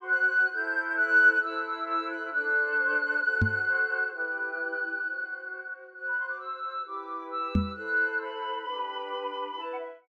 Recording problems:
microphone thump; at 3.5 s and at 7.5 s; peak +6 dB vs average level

